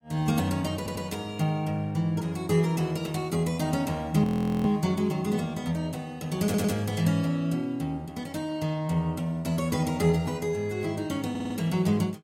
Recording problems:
lossy compression; AAC, log-spectral distance 2 dB
audio stuttering; at 1 s, at 6.5 s and at 11 s
frozen audio; at 4 s

